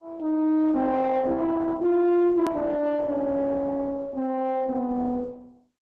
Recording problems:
codec artefacts; Opus, log-spectral distance 3 dB, nothing above 13.1 kHz
distorted audio; soft clipping, signal-to-distortion ratio 7 dB
hard cut with a click; at 2.5 s

